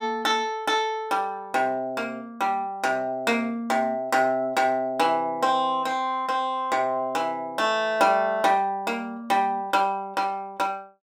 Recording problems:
none

